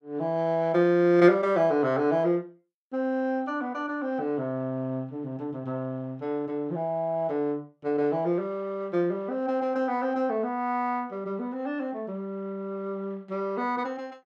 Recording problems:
none

